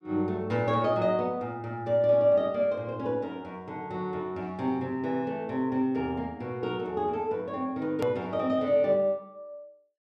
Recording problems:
click at an edit; at 8 s

